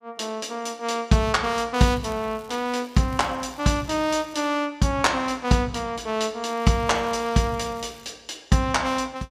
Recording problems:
crackling; from 2 to 4.5 s and from 6.5 to 8 s; loose cable, SNR 26 dB

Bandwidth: 15 kHz